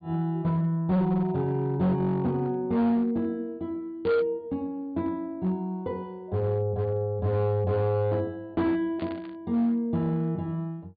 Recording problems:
treble cut off; nothing above 4.7 kHz
distorted audio; hard clipping, signal-to-distortion ratio 11 dB
static burst; at 4 s and at 9 s; peak -13 dB vs average level

